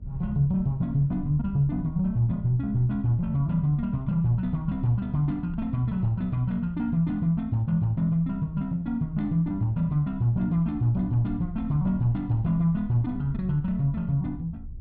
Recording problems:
rumble; below 74 Hz, SNR 16 dB

